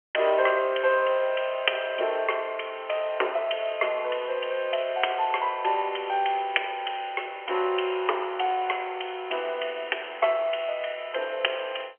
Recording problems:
phone line; 320 Hz to 3.2 kHz, G.711

